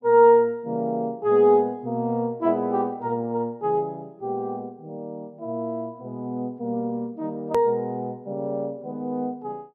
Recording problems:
hard cut with a click; at 7.5 s

